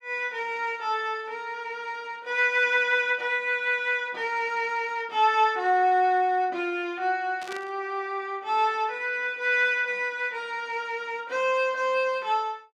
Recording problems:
static burst; at 7.5 s; peak -10 dB vs average level

